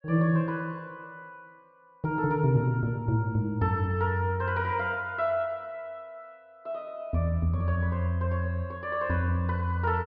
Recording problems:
treble cut off; nothing above 5.5 kHz

